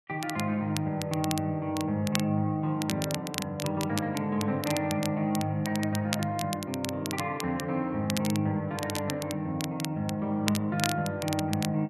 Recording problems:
crackling; vinyl, SNR 8 dB

